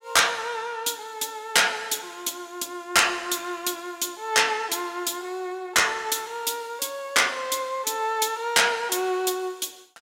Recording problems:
none

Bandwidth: 16 kHz